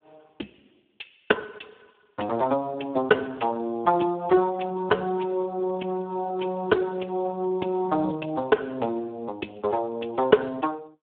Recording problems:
telephone audio; 240 Hz to 2.1 kHz, Speex

